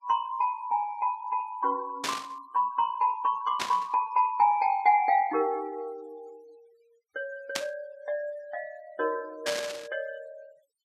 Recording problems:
denoising artefacts; signal-to-artefact ratio 27 dB
burst of static; 4 times, first at 2 s; peak +2 dB vs average level

